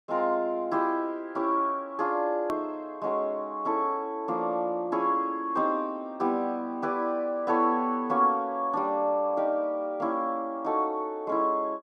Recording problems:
edit click; at 2.5 s

